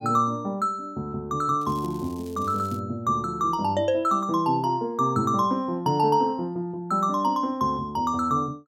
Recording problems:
crackle; from 1.5 to 3 s; loose cable, SNR 25 dB

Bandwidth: 16.5 kHz